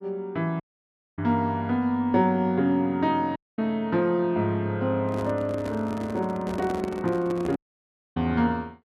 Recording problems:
audio cutting out; at 0.5 s for 0.5 s, at 3.5 s and at 7.5 s for 0.5 s
handling noise; from 5 to 7.5 s; peak -3 dB vs average level

